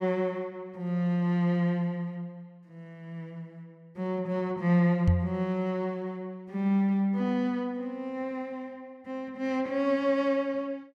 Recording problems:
microphone thump; at 5 s; peak +8 dB vs average level

